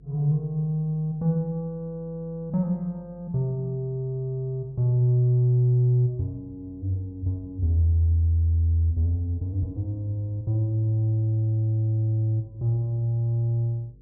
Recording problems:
hum; 50 Hz, harmonics up to 450 Hz, SNR 28 dB

